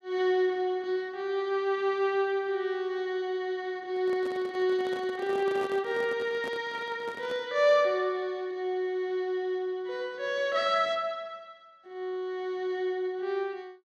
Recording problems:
handling noise; from 4 to 7.5 s; peak -6 dB vs average level

